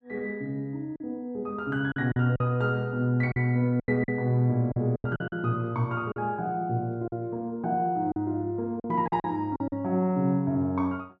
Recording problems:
packet loss; 8% of the sound replaced, filled with silence

